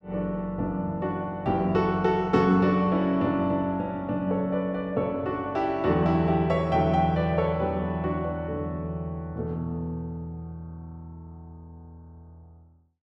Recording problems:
none

